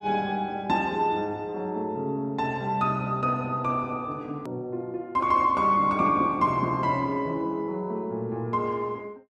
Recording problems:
hard cut with a click; at 4.5 s

